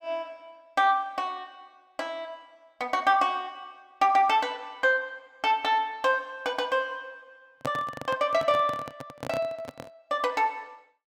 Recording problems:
microphone handling noise; from 7.5 to 10 s; peak -1 dB vs average level

